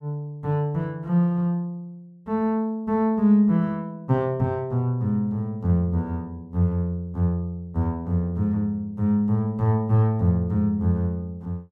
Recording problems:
none

